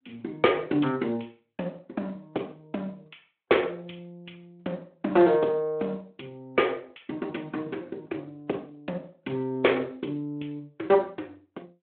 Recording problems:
telephone audio; 260 Hz to 3.4 kHz, Speex

